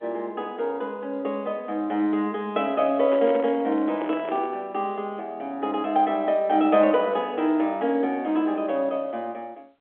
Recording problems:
phone line; 280 Hz to 3.5 kHz, G.711
handling noise; from 3 to 4.5 s; peak -5 dB vs average level

